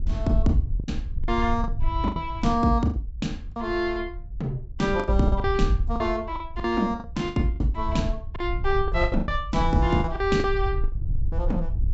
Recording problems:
low-pass filter; nothing above 7.7 kHz
wind on the microphone; below 68 Hz, SNR 5 dB
lost packets; 12% of the sound replaced, filled with the last packet

